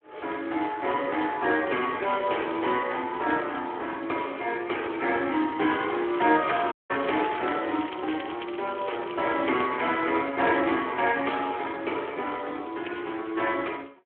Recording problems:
phone line; 240 Hz to 3.4 kHz, Speex
crackling; from 6 to 9.5 s; loose cable, SNR 16 dB
audio cutting out; at 6.5 s

